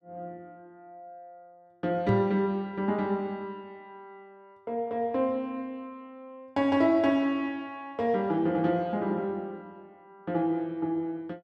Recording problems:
knock on the microphone; at 2 s; peak +3 dB vs average level

